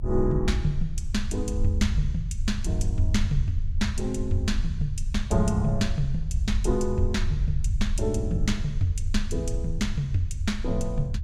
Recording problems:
low-frequency rumble; below 74 Hz, strongest tone 24 Hz, SNR 2 dB

